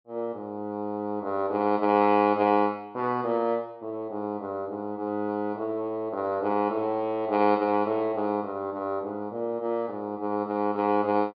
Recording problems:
treble missing; nothing above 5.5 kHz

